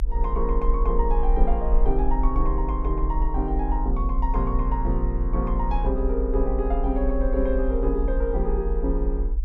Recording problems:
rumble; below 50 Hz, strongest tone 32 Hz, SNR -1 dB

